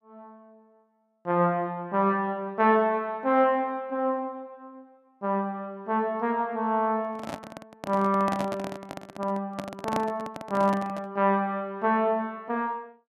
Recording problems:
microphone handling noise; from 7 to 11 s; peak 0 dB vs average level

